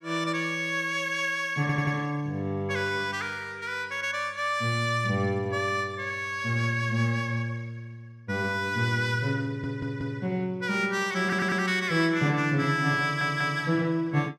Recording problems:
audio stuttering; 4 times, first at 1.5 s

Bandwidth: 14.5 kHz